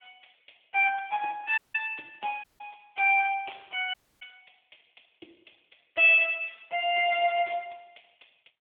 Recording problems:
phone line; 300 Hz to 3.4 kHz, AMR-NB
audio cutting out; at 1.5 s, at 2.5 s and at 4 s

